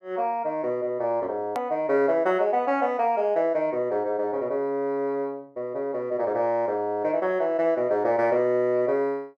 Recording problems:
edit click; at 1.5 s

